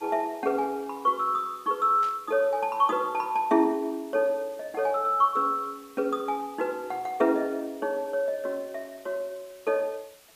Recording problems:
background hiss; slope 0 dB per octave, SNR 26 dB
static burst; at 2 s; peak -13 dB vs average level

